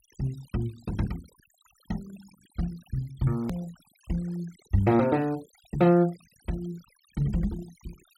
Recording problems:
denoising artefacts; signal-to-artefact ratio 24 dB
edit click; at 3.5 s

